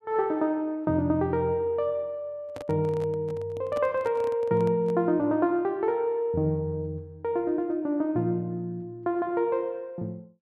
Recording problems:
handling noise; from 2.5 to 5 s; peak -7 dB vs average level

